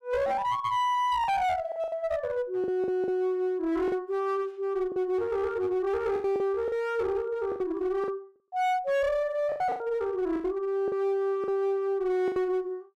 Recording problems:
distorted audio; hard clipping, uneven, signal-to-distortion ratio 11 dB
packet loss; 8% of the sound replaced, filled with the last packet

